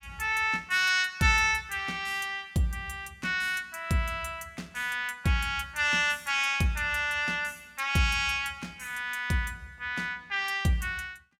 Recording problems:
none

